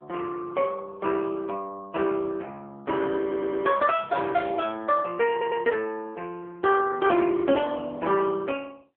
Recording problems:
telephone audio; 240 Hz to 3.2 kHz, AMR-NB
audio stuttering; at 3 s and at 5.5 s

